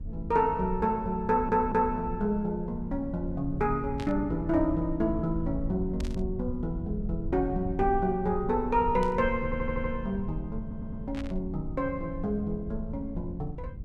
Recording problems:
rumble; below 90 Hz, SNR 9 dB
stutter; at 1.5 s, at 9.5 s and at 11 s
burst of static; 4 times, first at 4 s; peak -10 dB vs average level

